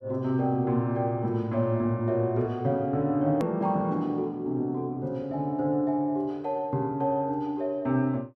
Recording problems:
hard cut with a click; at 3.5 s

